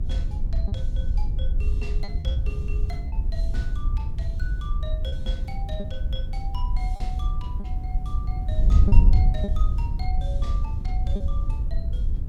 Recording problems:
hiss; slope -7 dB per octave, SNR 17 dB
rumble; below 56 Hz, strongest tone 48 Hz, SNR 3 dB
wind on the microphone; below 70 Hz, SNR -14 dB
lost packets; 4% of the sound replaced, filled with repeated pitch periods

